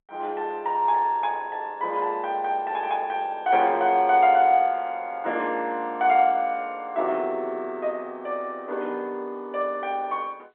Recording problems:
telephone audio; 300 Hz to 3.6 kHz, G.711

